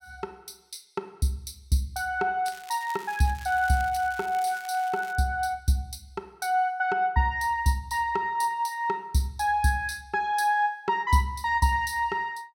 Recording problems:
crackle; from 2.5 to 5 s; loose cable, SNR 20 dB

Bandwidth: 16.5 kHz